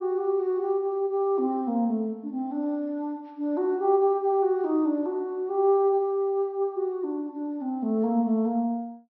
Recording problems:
treble missing; nothing above 5.7 kHz

